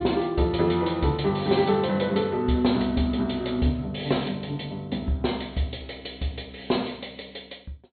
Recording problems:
treble cut off; nothing above 4.4 kHz

